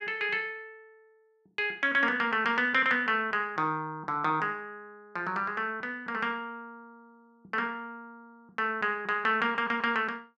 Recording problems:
none

